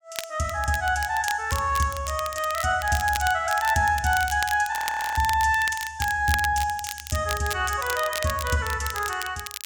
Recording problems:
crackling; vinyl, SNR 11 dB
audio freezing; at 4.5 s

